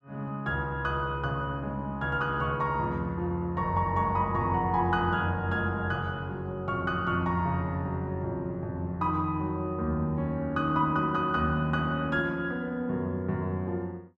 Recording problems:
none

